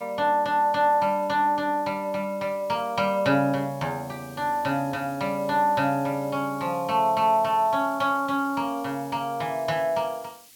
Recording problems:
hiss; SNR 24 dB

